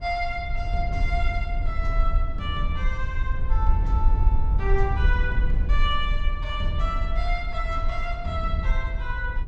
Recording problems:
rumble; below 56 Hz, SNR -3 dB

